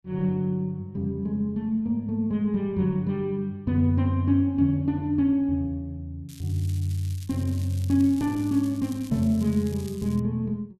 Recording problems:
crackle; from 6.5 to 10 s; loose cable, SNR 21 dB

